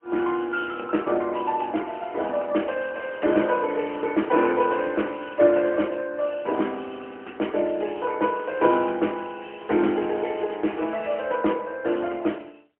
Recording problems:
phone line; 240 Hz to 3 kHz, AMR-NB, then MP3

